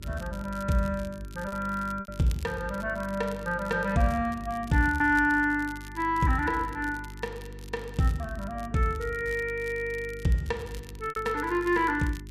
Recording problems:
hum; 50 Hz, harmonics up to 400 Hz, SNR 15 dB
crackling; vinyl, SNR 23 dB
lost packets; 2% of the sound replaced, filled with repeated pitch periods

